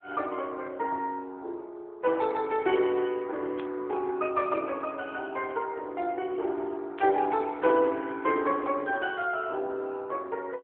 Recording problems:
telephone audio; 280 Hz to 3.6 kHz, AMR-NB
burst of static; at 3.5 s and at 7 s; peak -11 dB vs average level

